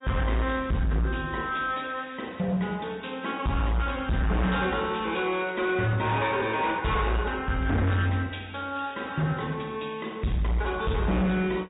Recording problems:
treble missing; nothing above 3.8 kHz
lossy codec; Vorbis, log-spectral distance 4 dB
distorted audio; hard clipping, signal-to-distortion ratio 8 dB

